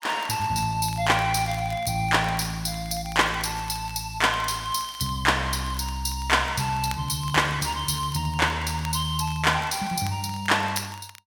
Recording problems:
crackle; vinyl, SNR 21 dB

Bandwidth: 17.5 kHz